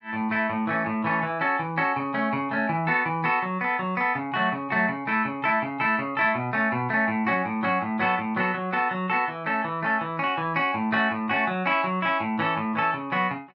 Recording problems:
none

